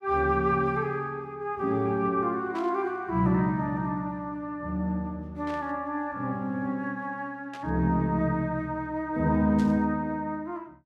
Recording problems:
burst of static; 4 times, first at 2.5 s; peak -13 dB vs average level

